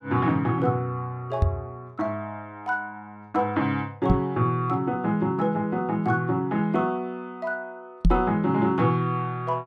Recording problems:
microphone bump; at 1.5 s, at 4 s and at 8 s; peak +8 dB vs average level

